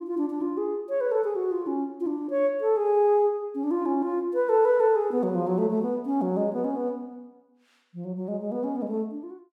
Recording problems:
none

